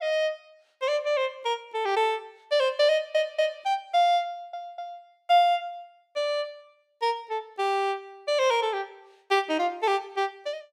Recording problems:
audio stuttering; at 3 s and at 4.5 s

